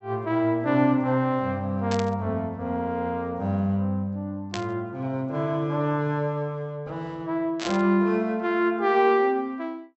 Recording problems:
low-pass filter; nothing above 7.9 kHz
static burst; at 2 s, at 4.5 s and at 7.5 s; peak -2 dB vs average level

